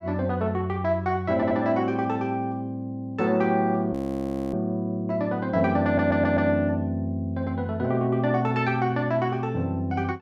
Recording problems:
audio stuttering; at 1.5 s and at 6 s
audio freezing; at 4 s for 0.5 s

